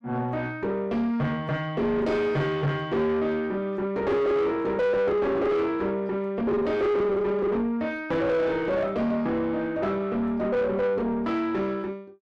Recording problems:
distorted audio; soft clipping, signal-to-distortion ratio 7 dB

